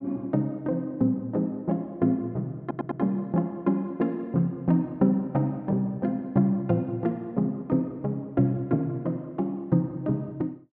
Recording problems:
treble cut off; nothing above 8 kHz
stutter; at 2.5 s

